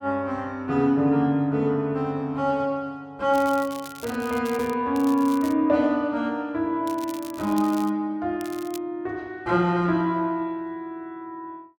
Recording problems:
crackling; 4 times, first at 3.5 s; loose cable, SNR 19 dB

